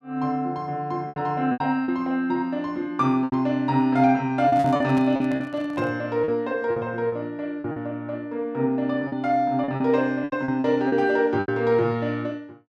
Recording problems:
lost packets; 9% of the sound replaced, filled with repeated pitch periods
handling noise; from 4.5 to 6 s; peak -7 dB vs average level

